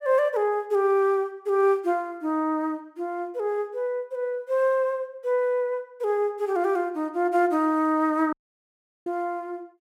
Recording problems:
audio cutting out; at 8.5 s for 0.5 s

